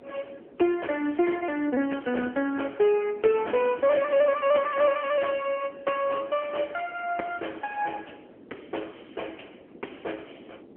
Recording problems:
phone line; 260 Hz to 3.1 kHz, AMR-NB
wind noise; below 460 Hz, SNR 21 dB

